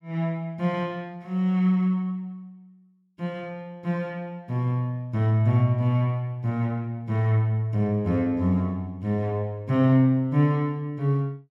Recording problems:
none

